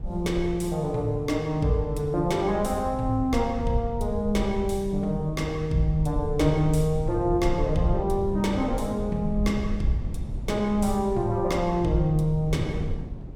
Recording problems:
low-frequency rumble; below 76 Hz, SNR 10 dB
wind on the microphone; below 200 Hz, SNR 13 dB

